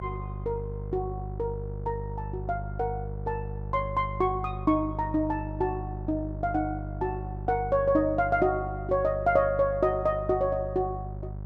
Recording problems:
electrical hum; 50 Hz, harmonics up to 750 Hz, SNR 8 dB

